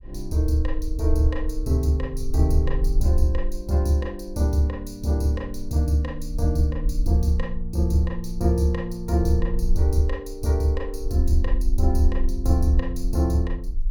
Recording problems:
rumble; below 42 Hz, strongest tone 20 Hz, SNR 6 dB

